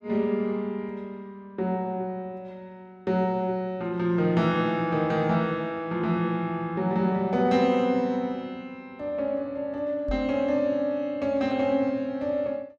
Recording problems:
microphone thump; at 10 s; peak -4 dB vs average level

